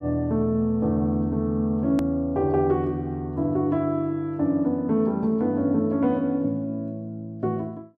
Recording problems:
hard cut with a click; at 2 s

